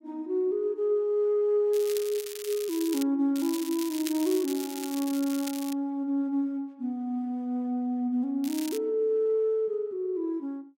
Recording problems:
crackle; from 1.5 to 3 s, from 3.5 to 5.5 s and at 8.5 s; loose cable, SNR 11 dB

